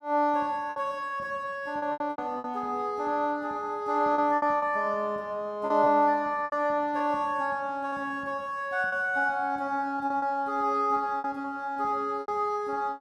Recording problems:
packet loss; 8% of the sound replaced, filled with repeated pitch periods

